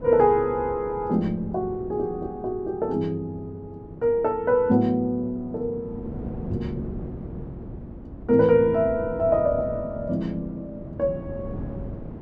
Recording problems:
wind on the microphone; below 290 Hz, SNR 14 dB

